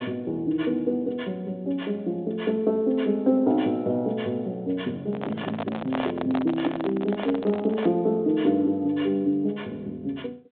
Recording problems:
phone line; 190 Hz to 3.8 kHz, G.726
microphone handling noise; from 5 to 8 s; peak 0 dB vs average level

